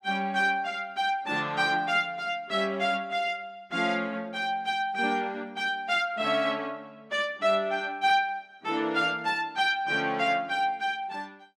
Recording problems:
none

